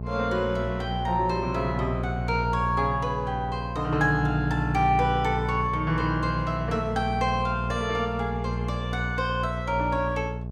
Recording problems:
hum; 60 Hz, harmonics up to 660 Hz, SNR 5 dB

